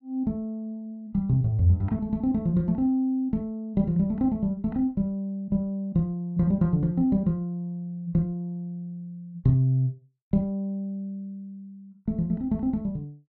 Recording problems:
none

